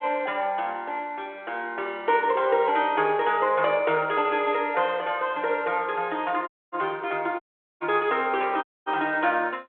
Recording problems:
telephone audio; 300 Hz to 3.4 kHz, G.726
dropout; at 6.5 s, at 7.5 s and at 8.5 s

